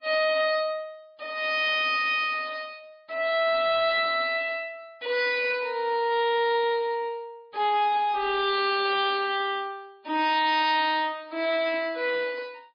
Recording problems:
codec artefacts; MP3, log-spectral distance 3 dB, nothing above 5 kHz
distorted audio; soft clipping, signal-to-distortion ratio 10 dB

